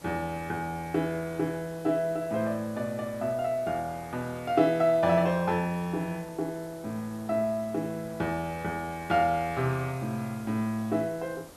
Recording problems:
background hiss; SNR 20 dB

